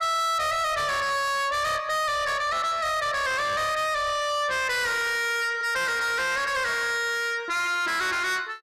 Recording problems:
distortion; soft clipping, signal-to-distortion ratio 6 dB

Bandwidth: 15 kHz